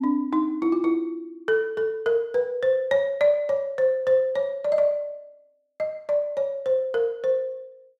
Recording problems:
none

